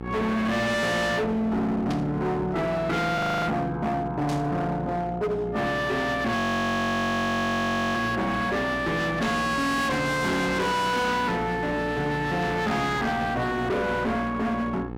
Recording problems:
distortion; hard clipping, signal-to-distortion ratio 6 dB
hum; 60 Hz, harmonics up to 2.2 kHz, SNR 12 dB
static burst; at 2 s, at 4.5 s and at 9 s; peak -8 dB vs average level
frozen audio; at 3 s and at 6.5 s for 1.5 s

